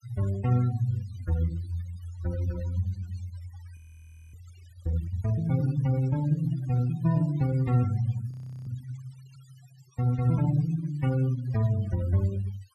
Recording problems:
denoising artefacts; signal-to-artefact ratio 19 dB
frozen audio; at 4 s for 0.5 s and at 8.5 s

